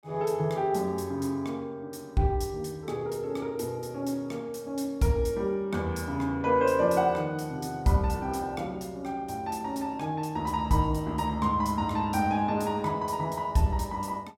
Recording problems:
none

